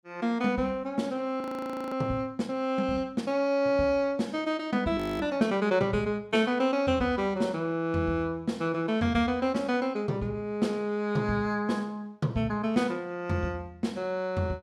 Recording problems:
audio freezing; at 1.5 s for 0.5 s and at 5 s

